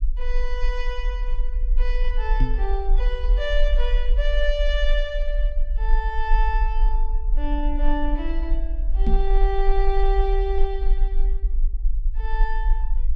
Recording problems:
low-frequency rumble; below 40 Hz, strongest tone 20 Hz, SNR -4 dB
microphone bump; at 2.5 s and at 9 s; peak +6 dB vs average level

